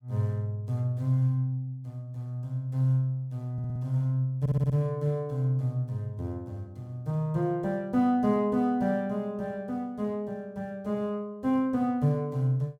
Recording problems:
stutter; at 3.5 s and at 4.5 s

